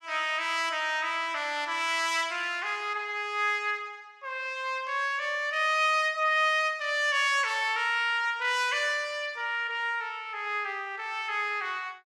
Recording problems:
none

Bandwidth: 15.5 kHz